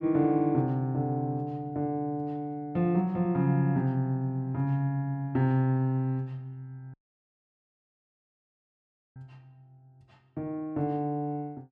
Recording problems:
audio cutting out; at 7 s for 2 s

